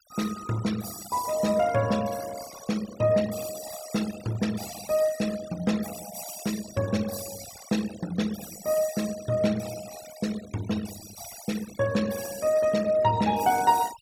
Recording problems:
denoising artefacts; signal-to-artefact ratio 14 dB

